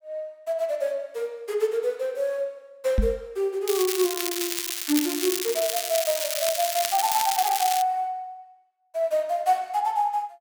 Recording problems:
microphone thump; at 3 s; peak +6 dB vs average level
crackling; from 3.5 to 8 s; loose cable, SNR 1 dB

